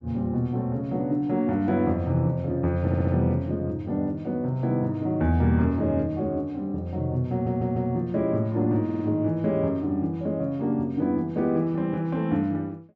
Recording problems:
stutter; at 3 s, at 7.5 s and at 9 s

